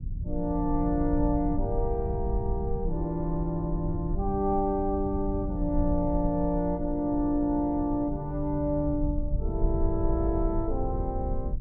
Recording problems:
rumble; below 80 Hz, SNR 5 dB

